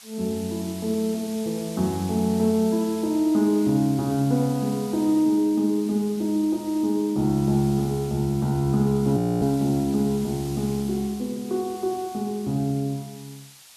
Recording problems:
hiss; slope +3 dB per octave, SNR 18 dB
audio freezing; at 9 s

